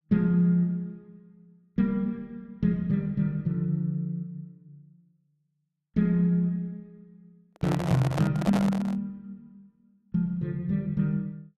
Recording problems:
handling noise; from 7.5 to 9 s; peak -1 dB vs average level

